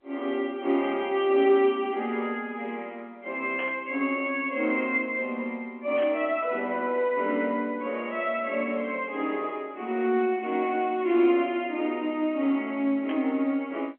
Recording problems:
phone line; 240 Hz to 3.3 kHz, G.711
static burst; at 3.5 s, at 6 s and at 13 s; peak -7 dB vs average level

